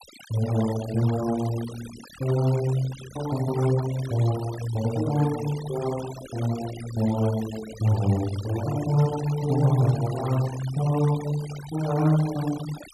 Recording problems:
noise reduction artefacts; signal-to-artefact ratio 15 dB

